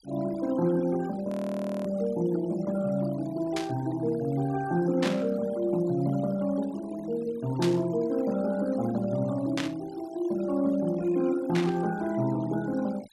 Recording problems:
denoising artefacts; signal-to-artefact ratio 20 dB
audio freezing; at 1.5 s for 0.5 s
burst of static; 5 times, first at 3.5 s; peak 0 dB vs average level

